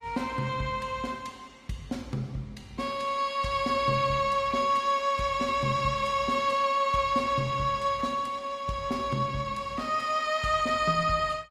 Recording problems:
codec artefacts; Opus, log-spectral distance 3 dB

